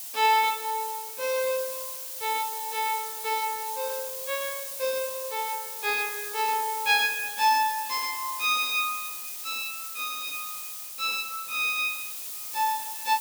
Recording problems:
background hiss; SNR 6 dB

